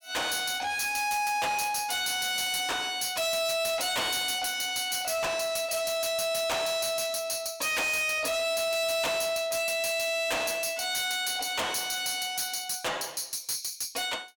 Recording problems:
distortion; soft clipping, signal-to-distortion ratio 6 dB

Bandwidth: 18.5 kHz